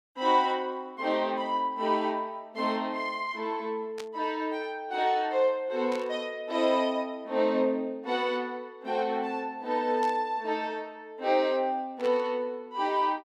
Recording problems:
static burst; 4 times, first at 4 s; peak -9 dB vs average level

